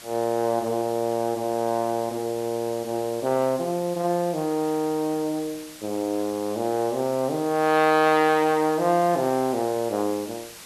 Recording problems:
hiss; slope 0 dB per octave, SNR 17 dB

